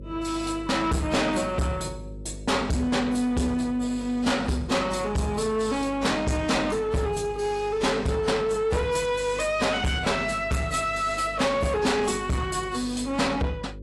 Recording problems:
lossy compression; AAC, log-spectral distance 3 dB
distorted audio; soft clipping, signal-to-distortion ratio 6 dB
hum; 50 Hz, harmonics up to 550 Hz, SNR 16 dB

